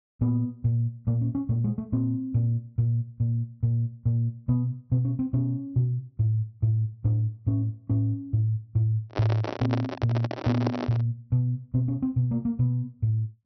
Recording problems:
treble missing; nothing above 5.9 kHz
microphone handling noise; from 9 to 11 s; peak +2 dB vs average level

